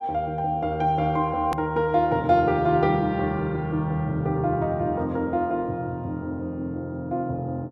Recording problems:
hard cut with a click; at 1.5 s

